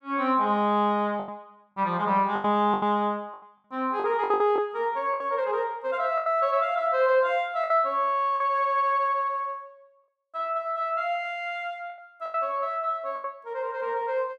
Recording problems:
lost packets; 8% of the sound replaced, filled with the last packet

